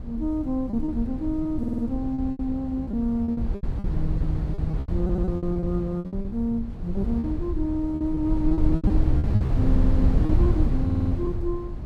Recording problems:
wind on the microphone; below 110 Hz, SNR -1 dB
lost packets; 13% of the sound replaced, filled with repeated pitch periods
audio stuttering; 4 times, first at 1.5 s

